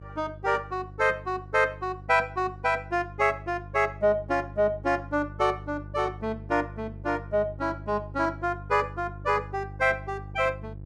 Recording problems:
electrical hum; 50 Hz, harmonics up to 500 Hz, SNR 15 dB

